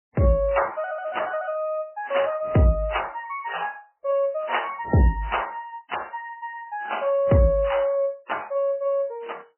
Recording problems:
codec artefacts; MP3, then AAC, log-spectral distance 4 dB, nothing above 3 kHz

